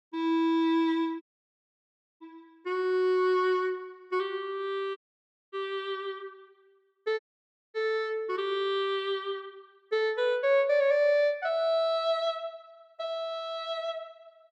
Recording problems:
audio cutting out; at 1 s for 1 s, at 5 s for 0.5 s and at 7 s for 0.5 s

